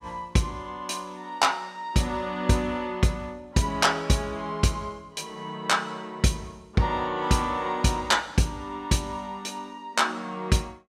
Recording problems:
none

